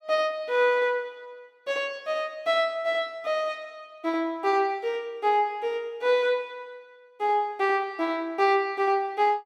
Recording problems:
none

